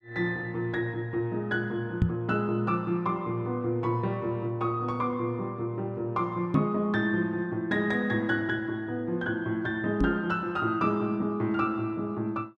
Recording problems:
knock on the microphone; at 2 s, at 6.5 s and at 10 s; peak +8 dB vs average level

